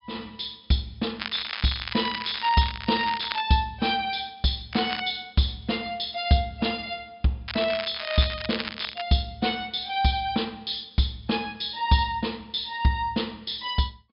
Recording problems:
treble missing; nothing above 5.5 kHz
crackling; from 1 to 3.5 s, at 4.5 s and from 7.5 to 9 s; loose cable, SNR 7 dB

